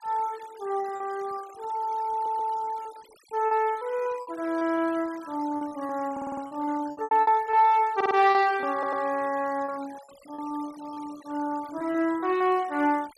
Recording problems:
noise reduction artefacts; signal-to-artefact ratio 22 dB
packet loss; 8% of the sound replaced, filled with repeated pitch periods
audio stuttering; 4 times, first at 2 s

